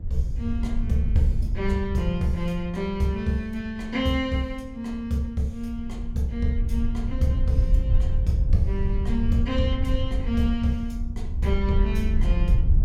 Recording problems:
wind on the microphone; below 72 Hz, SNR 0 dB

